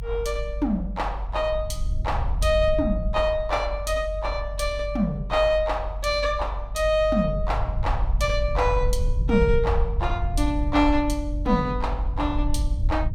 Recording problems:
rumble; below 68 Hz, strongest tone 46 Hz, SNR 4 dB

